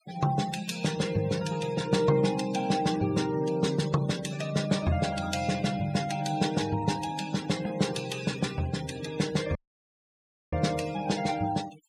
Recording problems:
denoising artefacts; signal-to-artefact ratio 15 dB
audio cutting out; at 9.5 s for 1 s

